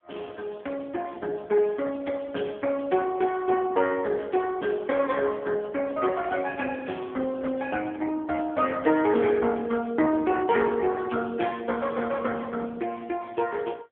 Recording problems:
phone line; 240 Hz to 3.4 kHz, AMR-NB

